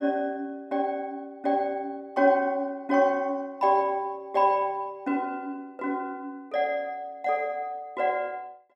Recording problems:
none

